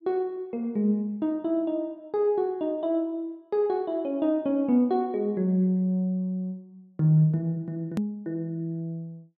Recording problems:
hard cut with a click; at 8 s

